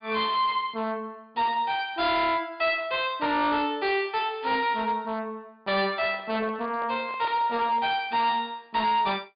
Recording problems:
treble missing; nothing above 4.9 kHz
distortion; hard clipping, signal-to-distortion ratio 11 dB
handling noise; from 6 to 8 s; peak -11 dB vs average level

